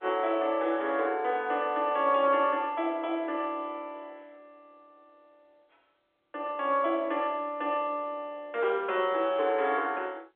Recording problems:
telephone audio; 340 Hz to 3.7 kHz, G.711

